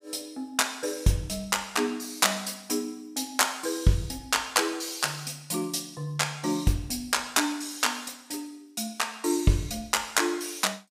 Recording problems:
none

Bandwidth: 15.5 kHz